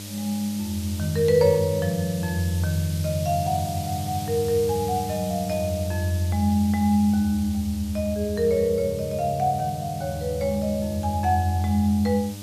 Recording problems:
hum; 50 Hz, harmonics up to 900 Hz, SNR 13 dB
hiss; slope +5 dB per octave, SNR 15 dB

